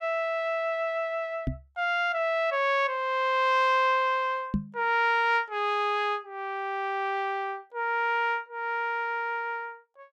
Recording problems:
microphone thump; at 1.5 s and at 4.5 s; peak +3 dB vs average level

